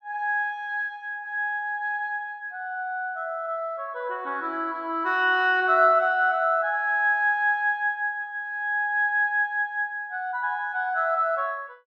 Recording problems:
none

